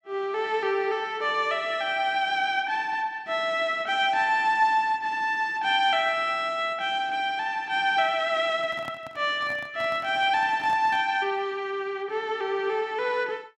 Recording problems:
microphone handling noise; from 8.5 to 11 s; peak -10 dB vs average level

